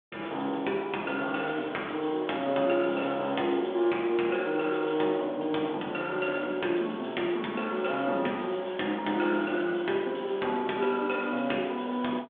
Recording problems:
telephone audio; 240 Hz to 3.5 kHz, G.726

